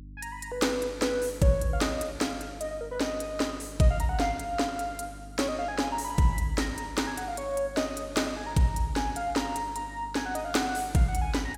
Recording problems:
hum; 50 Hz, harmonics up to 300 Hz, SNR 18 dB

